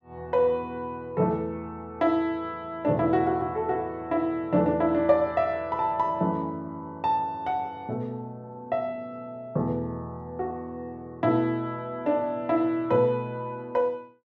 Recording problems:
none

